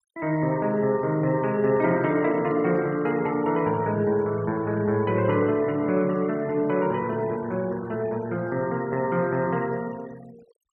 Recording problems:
denoising artefacts; signal-to-artefact ratio 23 dB

